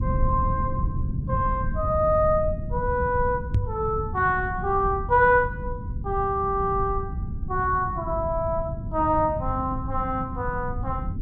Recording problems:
low-frequency rumble; below 130 Hz, SNR 7 dB
knock on the microphone; at 3.5 s; peak +5 dB vs average level

